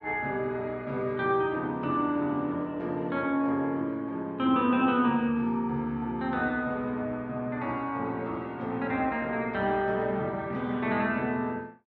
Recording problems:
none

